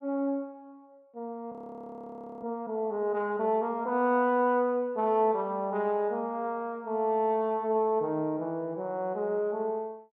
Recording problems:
frozen audio; at 1.5 s for 1 s

